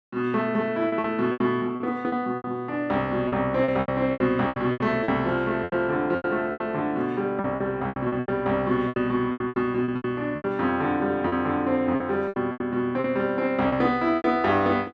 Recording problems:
lost packets; 14% of the sound replaced, filled with repeated pitch periods

